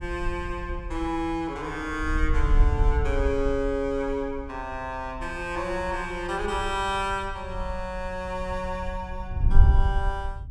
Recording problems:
wind on the microphone; below 66 Hz, SNR -1 dB

